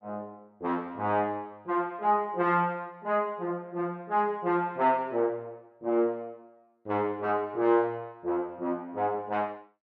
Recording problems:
none

